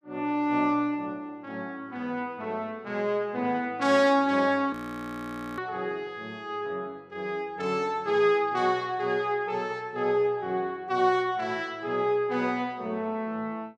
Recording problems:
audio freezing; at 4.5 s for 1 s

